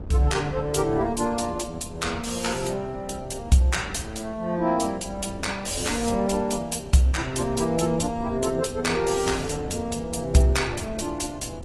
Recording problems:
codec artefacts; AAC, log-spectral distance 4 dB, nothing above 11.3 kHz
wind noise; below 270 Hz, SNR 15 dB

